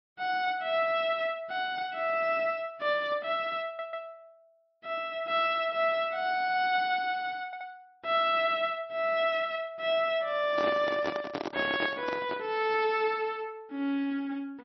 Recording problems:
lossy compression; MP3, log-spectral distance 2 dB, nothing above 5.3 kHz
stutter; at 3.5 s and at 7.5 s
handling noise; from 11 to 12 s; peak -1 dB vs average level

